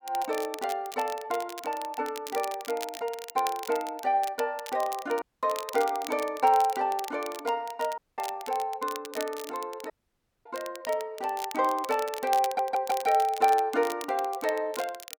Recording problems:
crackle; vinyl, SNR 14 dB
dropout; at 5 s, at 8 s and at 10 s for 0.5 s
stutter; at 12 s

